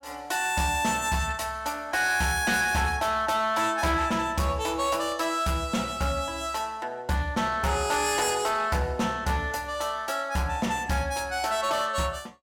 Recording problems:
distorted audio; hard clipping, uneven, signal-to-distortion ratio 11 dB

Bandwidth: 17 kHz